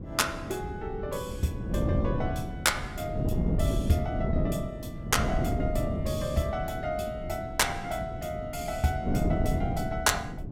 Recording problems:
wind noise; below 240 Hz, SNR 1 dB

